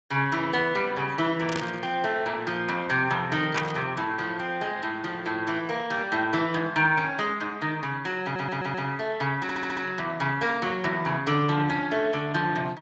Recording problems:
lossy compression; Speex, log-spectral distance 4 dB, nothing above 7.3 kHz
burst of static; at 1.5 s and at 3.5 s; peak +2 dB vs average level
audio stuttering; at 8 s and at 9.5 s

